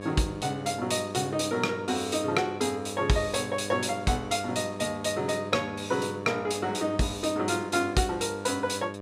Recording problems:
hum; 50 Hz, harmonics up to 2.3 kHz, SNR 11 dB

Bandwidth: 15.5 kHz